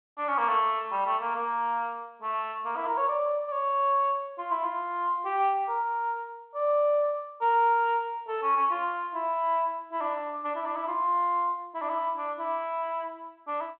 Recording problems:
telephone audio; 260 Hz to 3.7 kHz, G.726

